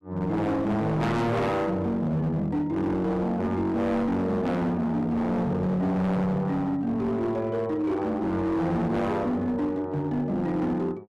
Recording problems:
distorted audio; hard clipping, signal-to-distortion ratio 8 dB

